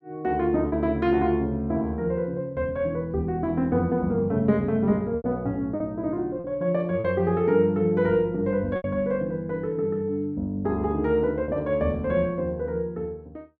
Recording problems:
packet loss; 3% of the sound replaced, filled with repeated pitch periods

